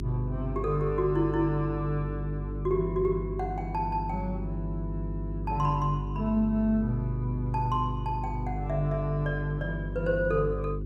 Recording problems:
hum; 50 Hz, harmonics up to 400 Hz, SNR 5 dB

